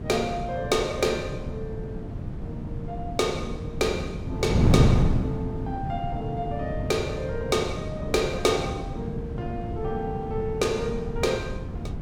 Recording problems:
wind noise; below 210 Hz, SNR 1 dB

